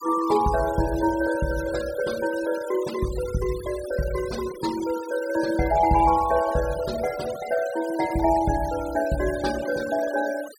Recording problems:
noise reduction artefacts; signal-to-artefact ratio 15 dB

